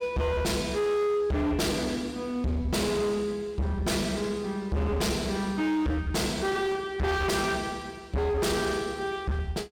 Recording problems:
distorted audio; hard clipping, signal-to-distortion ratio 6 dB

